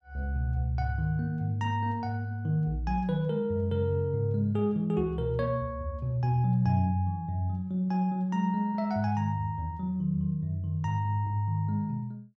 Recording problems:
none

